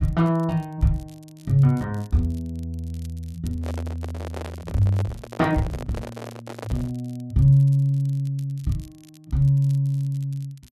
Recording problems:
crackle; vinyl, SNR 29 dB
handling noise; from 3.5 to 7 s; peak -6 dB vs average level

